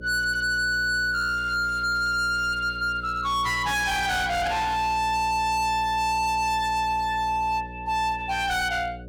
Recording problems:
distortion; hard clipping, signal-to-distortion ratio 8 dB
hum; 60 Hz, harmonics up to 600 Hz, SNR 16 dB

